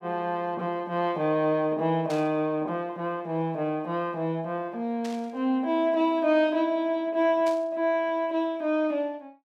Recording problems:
burst of static; at 2 s, at 5 s and at 7.5 s; peak -9 dB vs average level

